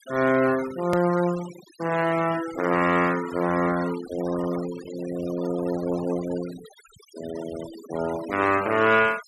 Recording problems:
denoising artefacts; signal-to-artefact ratio 15 dB
edit click; at 1 s

